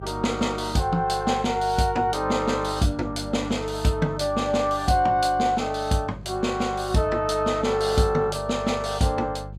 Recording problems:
mains hum; 50 Hz, harmonics up to 400 Hz, SNR 15 dB

